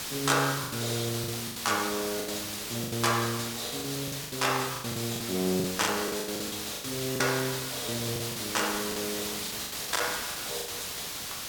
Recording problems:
hiss; slope 0 dB per octave, SNR 3 dB
crackling; vinyl, SNR 28 dB
packet loss; 14% of the sound replaced, filled with the last packet

